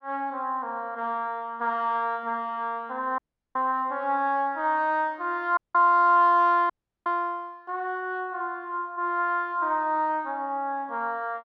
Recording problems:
audio cutting out; at 3 s, at 5.5 s and at 6.5 s

